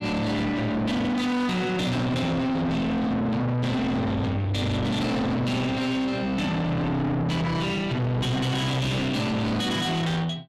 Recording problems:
distortion; soft clipping, signal-to-distortion ratio 5 dB

